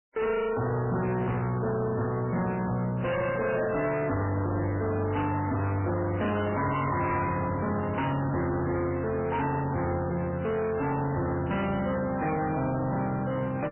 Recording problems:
codec artefacts; MP3, log-spectral distance 4 dB, nothing above 3 kHz
distorted audio; hard clipping, uneven, signal-to-distortion ratio 7 dB

